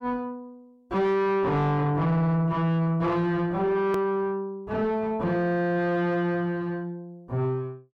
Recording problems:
distortion; soft clipping, signal-to-distortion ratio 7 dB
click at an edit; at 4 s

